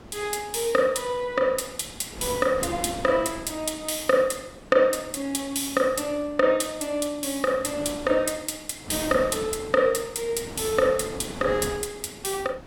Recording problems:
wind noise; below 750 Hz, SNR 15 dB

